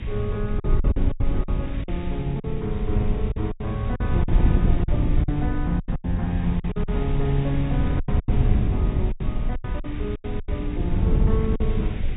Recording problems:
treble missing; nothing above 3.8 kHz
lossy compression; AAC, log-spectral distance 3 dB
background hiss; SNR 17 dB
wind on the microphone; below 100 Hz, SNR -4 dB
packet loss; 12% of the sound replaced, filled with silence

